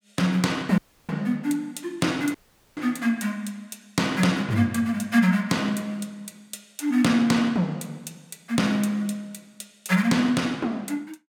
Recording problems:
audio cutting out; at 1 s and at 2.5 s

